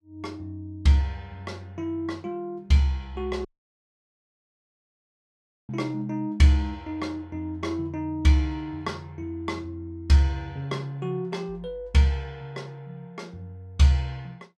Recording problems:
audio cutting out; at 3.5 s for 2 s

